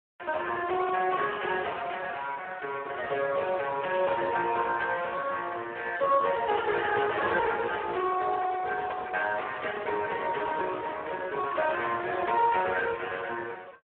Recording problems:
phone line; 300 Hz to 3 kHz, Speex

